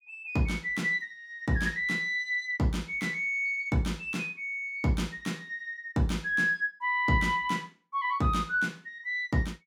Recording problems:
none

